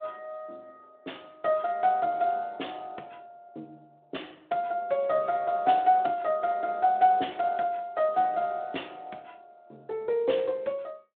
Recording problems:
phone line; 280 Hz to 3.7 kHz, Speex

